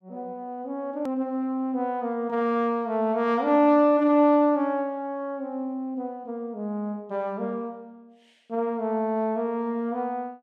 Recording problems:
edit click; at 1 s

